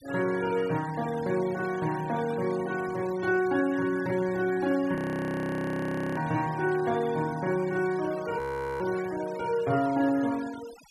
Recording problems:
denoising artefacts; signal-to-artefact ratio 17 dB
frozen audio; at 5 s for 1 s and at 8.5 s

